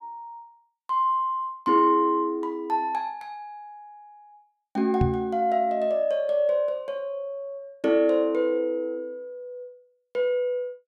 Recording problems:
knock on the microphone; at 5 s; peak +4 dB vs average level

